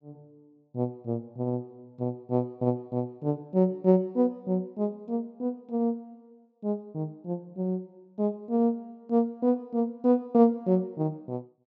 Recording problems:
treble cut off; nothing above 8 kHz

